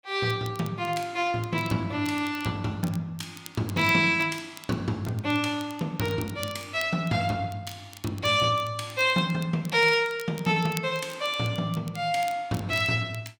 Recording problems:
crackle; vinyl, SNR 20 dB

